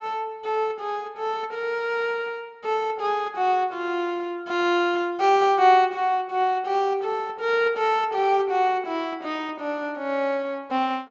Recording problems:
treble cut off; nothing above 8 kHz

